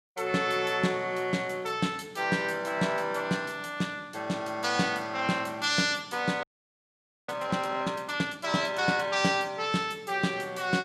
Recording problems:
frozen audio; at 6.5 s for 1 s

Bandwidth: 14.5 kHz